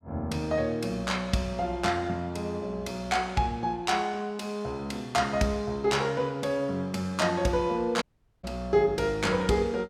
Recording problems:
audio cutting out; at 8 s

